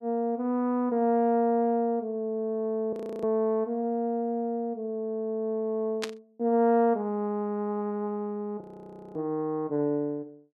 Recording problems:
frozen audio; at 3 s and at 8.5 s for 0.5 s
static burst; at 6 s; peak 0 dB vs average level

